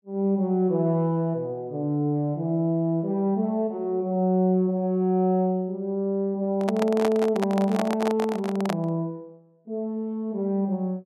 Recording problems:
handling noise; from 6.5 to 9 s; peak +1 dB vs average level

